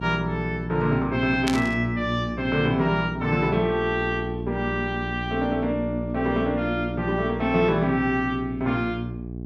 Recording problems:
hum; 60 Hz, harmonics up to 720 Hz, SNR 8 dB
static burst; at 1.5 s; peak +2 dB vs average level

